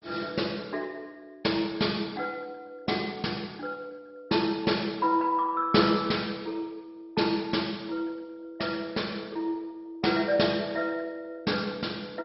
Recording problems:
codec artefacts; MP2, log-spectral distance 5 dB, nothing above 5.3 kHz

